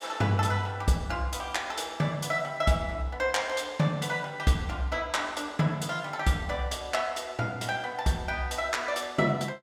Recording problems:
none

